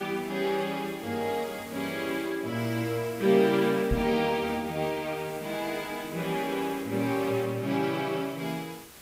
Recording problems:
hiss; slope -2 dB per octave, SNR 18 dB
microphone thump; at 4 s; peak +3 dB vs average level

